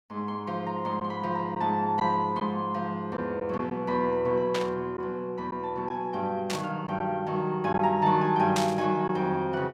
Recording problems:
packet loss; 1.7% of the sound replaced, filled with silence
burst of static; at 4.5 s, at 6.5 s and at 8.5 s; peak +1 dB vs average level

